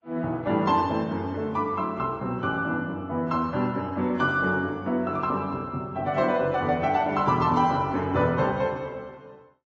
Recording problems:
codec artefacts; AAC, log-spectral distance 2 dB, nothing above 7.3 kHz

